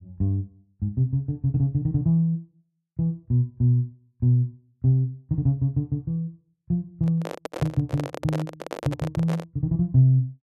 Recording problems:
microphone handling noise; from 7 to 9.5 s; peak -3 dB vs average level

